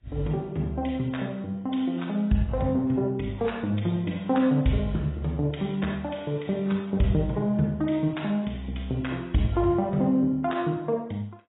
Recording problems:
codec artefacts; AAC, log-spectral distance 3 dB, nothing above 3.8 kHz

